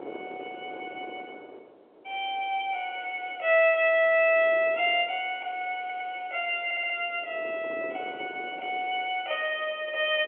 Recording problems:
telephone audio; 320 Hz to 3.3 kHz, G.711
wind noise; below 620 Hz, SNR 20 dB
audio stuttering; at 6 s and at 6.5 s

